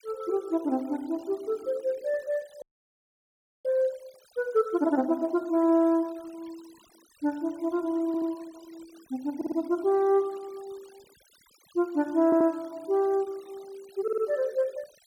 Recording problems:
denoising artefacts; signal-to-artefact ratio 27 dB
audio freezing; at 2.5 s for 1 s
stutter; 4 times, first at 8 s

